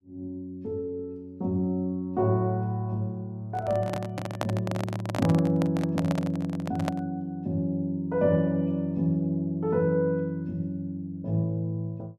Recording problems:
microphone handling noise; from 3.5 to 7 s; peak +3 dB vs average level

